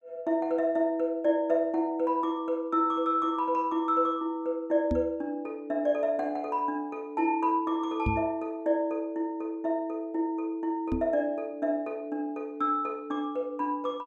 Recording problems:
knock on the microphone; at 5 s, at 8 s and at 11 s; peak +3 dB vs average level

